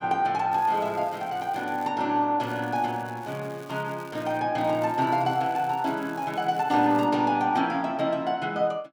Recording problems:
crackling; from 0.5 to 2 s, from 2.5 to 4.5 s and from 4.5 to 7 s; loose cable, SNR 25 dB

